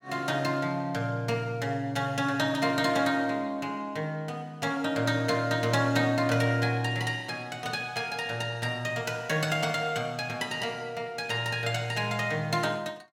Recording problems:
none

